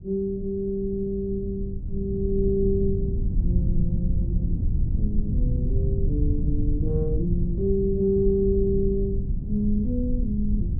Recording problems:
low-frequency rumble; below 100 Hz, SNR 0 dB

